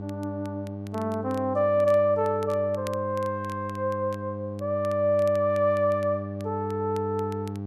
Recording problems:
hum; 50 Hz, harmonics up to 800 Hz, SNR 9 dB
crackling; vinyl, SNR 26 dB

